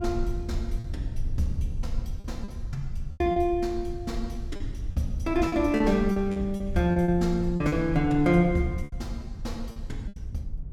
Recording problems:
rumble; below 74 Hz, SNR 9 dB
packet loss; 8% of the sound replaced, filled with repeated pitch periods

